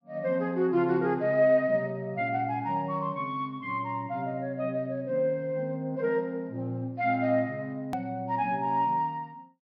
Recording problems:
treble cut off; nothing above 5.6 kHz
edit click; at 8 s

